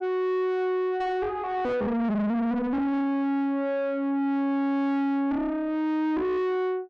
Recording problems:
distortion; soft clipping, signal-to-distortion ratio 8 dB

